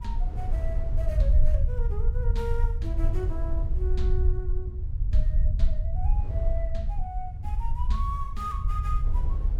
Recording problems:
rumble; below 62 Hz, SNR -10 dB
wind noise; below 440 Hz, SNR 11 dB

